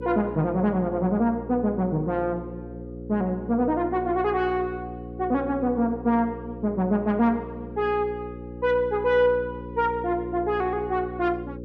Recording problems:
mains hum; 60 Hz, harmonics up to 540 Hz, SNR 12 dB

